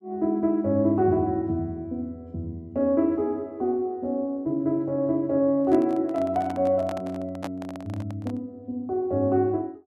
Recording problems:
microphone handling noise; from 5.5 to 8.5 s; peak -4 dB vs average level

